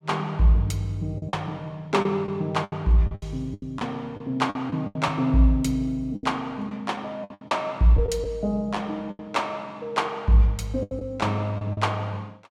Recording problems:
lost packets; 10% of the sound replaced, filled with the last packet

